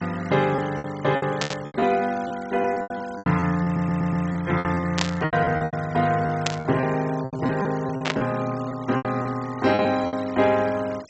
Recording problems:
treble missing; nothing above 8 kHz
noise reduction artefacts; signal-to-artefact ratio 18 dB
lost packets; 14% of the sound replaced, filled with repeated pitch periods
static burst; 4 times, first at 1.5 s; peak +4 dB vs average level
stutter; at 3.5 s

